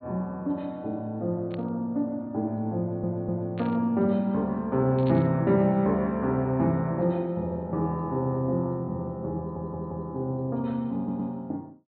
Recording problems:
treble missing; nothing above 4.4 kHz
static burst; at 1.5 s, at 3.5 s and at 5 s; peak -13 dB vs average level
audio stuttering; at 3 s, at 9.5 s and at 11 s

